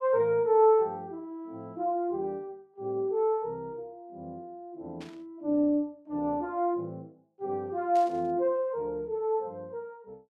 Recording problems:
static burst; at 5 s and at 8 s; peak -15 dB vs average level

